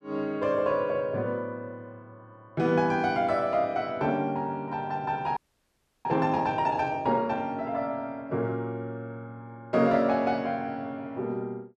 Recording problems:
audio freezing; at 5.5 s for 0.5 s

